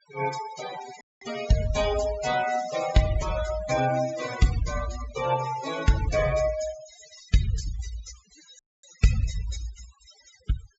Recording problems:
low-pass filter; nothing above 7.7 kHz
noise reduction artefacts; signal-to-artefact ratio 10 dB
dropout; at 1 s and at 8.5 s

